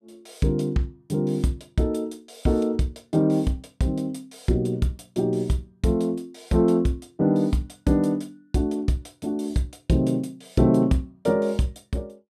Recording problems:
none

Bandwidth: 14 kHz